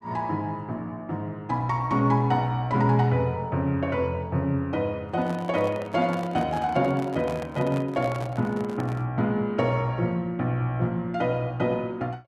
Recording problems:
handling noise; from 5 to 9 s; peak -6 dB vs average level

